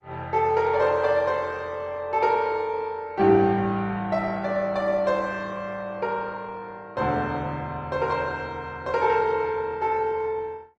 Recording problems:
codec artefacts; Opus, log-spectral distance 2 dB

